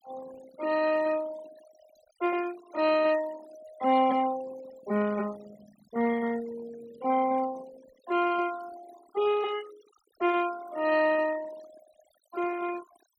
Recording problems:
noise reduction artefacts; signal-to-artefact ratio 19 dB

